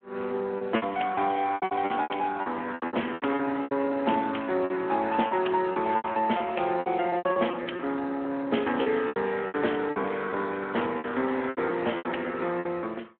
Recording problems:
telephone audio; 190 Hz to 3.3 kHz, Speex
lost packets; 15% of the sound replaced, filled with repeated pitch periods

